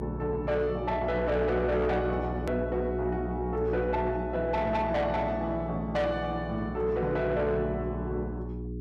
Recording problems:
distorted audio; soft clipping, signal-to-distortion ratio 11 dB
electrical hum; 60 Hz, harmonics up to 420 Hz, SNR 7 dB
edit click; at 2.5 s

